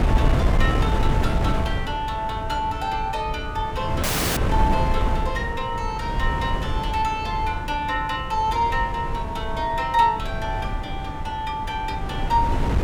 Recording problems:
wind on the microphone; below 180 Hz, SNR 2 dB
audio cutting out; at 4 s

